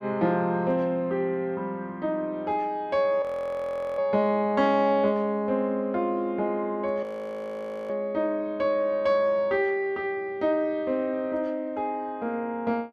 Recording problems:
audio freezing; at 3 s for 1 s and at 7 s for 1 s

